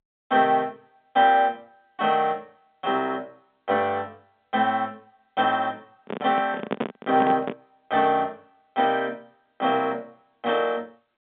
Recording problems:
phone line; 130 Hz to 3.7 kHz, G.711
microphone handling noise; from 6 to 7.5 s; peak +1 dB vs average level

